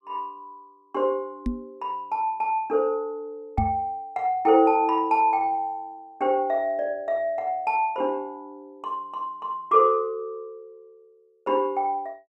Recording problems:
knock on the microphone; at 1.5 s and at 3.5 s; peak +2 dB vs average level

